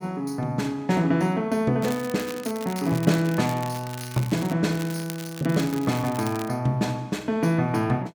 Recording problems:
crackle; from 2 to 4.5 s and from 4.5 to 6.5 s; loose cable, SNR 15 dB

